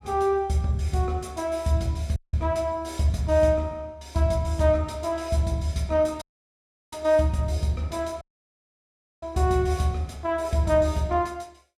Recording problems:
audio cutting out; at 2 s, at 6 s for 0.5 s and at 8 s for 1 s

